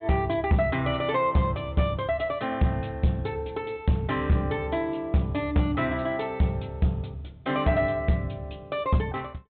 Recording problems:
low-pass filter; nothing above 4 kHz
distorted audio; soft clipping, signal-to-distortion ratio 11 dB

